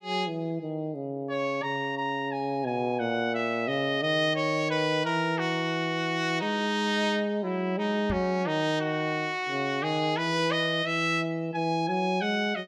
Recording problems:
microphone bump; at 8 s; peak -1 dB vs average level

